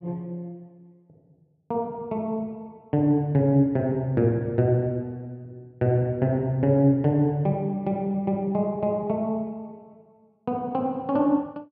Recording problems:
none

